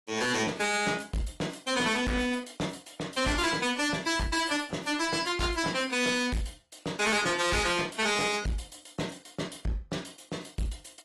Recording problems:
codec artefacts; AAC, log-spectral distance 6 dB, nothing above 11.3 kHz
distorted audio; hard clipping, signal-to-distortion ratio 6 dB

